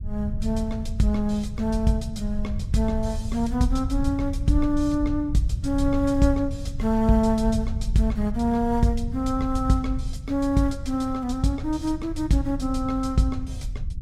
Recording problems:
low-frequency rumble; below 86 Hz, SNR 7 dB

